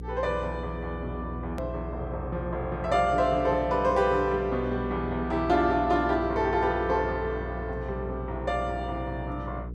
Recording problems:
hum; 60 Hz, harmonics up to 480 Hz, SNR 10 dB
hard cut with a click; at 1.5 s

